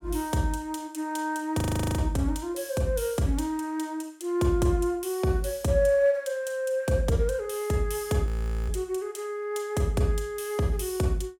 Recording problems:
audio freezing; at 1.5 s and at 8.5 s

